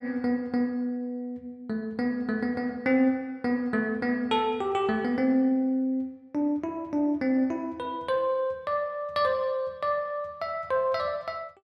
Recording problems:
none

